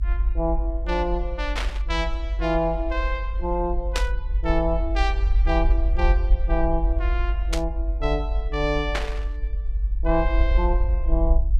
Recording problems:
low-frequency rumble; below 50 Hz, strongest tone 46 Hz, SNR -2 dB
burst of static; 4 times, first at 1.5 s; peak +4 dB vs average level

